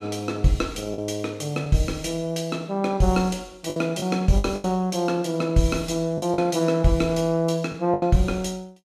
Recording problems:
lost packets; 5% of the sound replaced, filled with the last packet

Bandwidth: 14.5 kHz